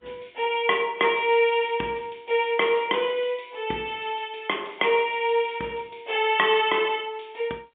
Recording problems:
telephone audio; 240 Hz to 3.6 kHz, G.711

